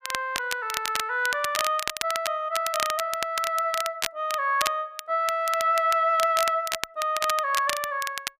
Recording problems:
crackling; vinyl, SNR 6 dB

